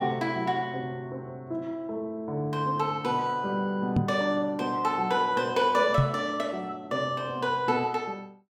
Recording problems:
microphone bump; at 4 s and at 6 s; peak +7 dB vs average level

